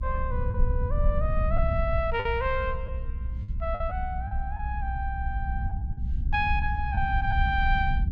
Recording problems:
rumble; below 76 Hz, SNR 0 dB
packet loss; 4% of the sound replaced, filled with the last packet

